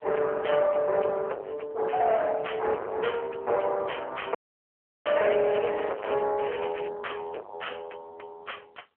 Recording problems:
phone line; 340 Hz to 2.8 kHz, AMR-NB
distorted audio; soft clipping, signal-to-distortion ratio 4 dB
audio cutting out; at 4.5 s for 0.5 s
crackle; from 5 to 6 s and at 6.5 s; loose cable, SNR 15 dB

